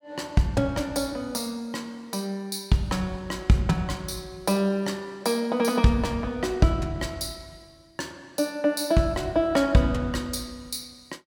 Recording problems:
none

